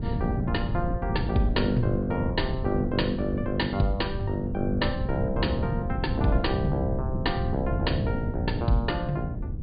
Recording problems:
treble cut off; nothing above 4.8 kHz
wind noise; below 160 Hz, SNR 3 dB

